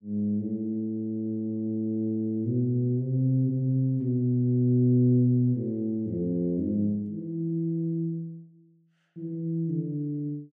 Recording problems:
none

